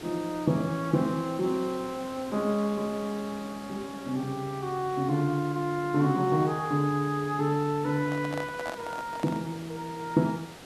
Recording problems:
background hiss; SNR 16 dB
microphone handling noise; from 8 to 9.5 s; peak -3 dB vs average level

